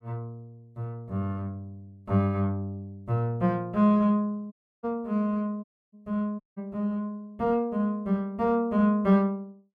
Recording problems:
audio cutting out; at 4.5 s, at 5.5 s and at 6.5 s

